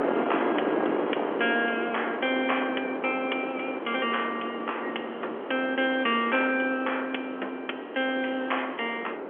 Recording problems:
telephone audio; 300 Hz to 3.3 kHz, G.711
wind on the microphone; below 870 Hz, SNR 4 dB

